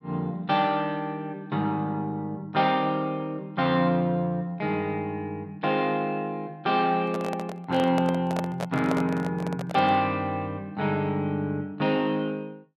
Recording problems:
microphone handling noise; from 7 to 10 s; peak -1 dB vs average level

